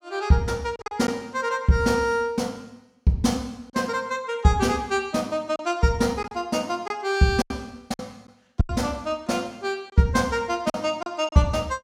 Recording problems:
lost packets; 5% of the sound replaced, filled with silence

